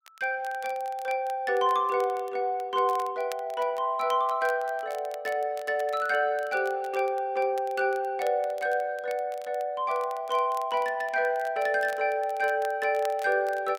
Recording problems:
crackle; vinyl, SNR 23 dB

